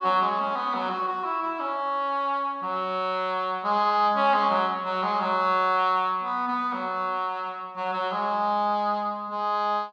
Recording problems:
none

